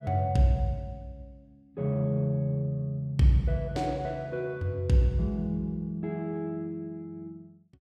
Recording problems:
none

